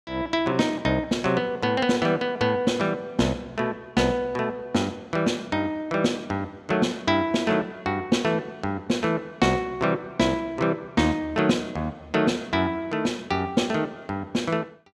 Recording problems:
none

